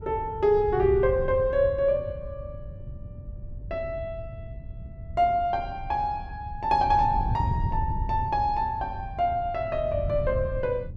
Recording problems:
wind on the microphone; below 120 Hz, SNR 9 dB

